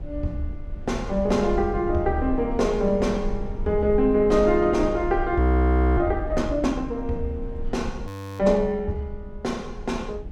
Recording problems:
low-frequency rumble; below 72 Hz, SNR 10 dB
audio freezing; at 5.5 s for 0.5 s and at 8 s

